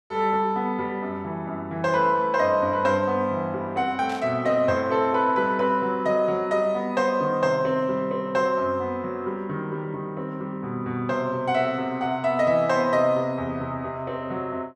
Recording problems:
burst of static; at 4 s; peak -12 dB vs average level

